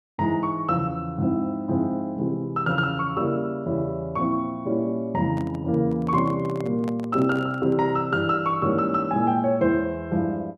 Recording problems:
microphone handling noise; from 5 to 8 s; peak -10 dB vs average level

